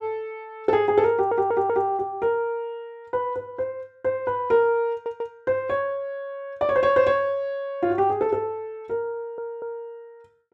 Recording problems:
stutter; at 1 s, at 5 s and at 9 s

